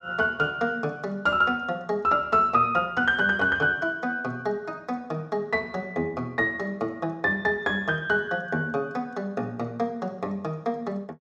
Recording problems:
none

